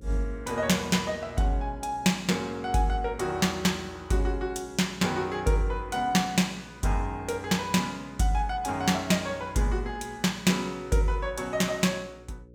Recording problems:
hum; 60 Hz, harmonics up to 540 Hz, SNR 23 dB

